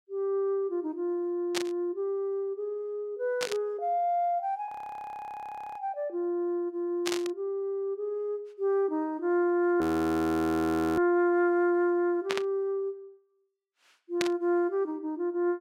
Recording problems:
burst of static; 5 times, first at 1.5 s; peak +3 dB vs average level
audio freezing; at 4.5 s for 1 s and at 10 s for 1 s

